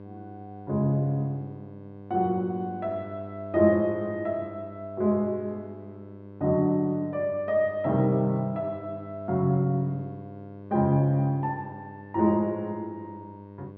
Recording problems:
electrical hum; 50 Hz, harmonics up to 1.1 kHz, SNR 16 dB

